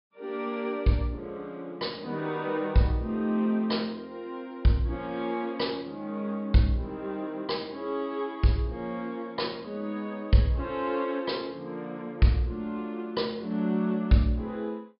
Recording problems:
low-pass filter; nothing above 5.5 kHz

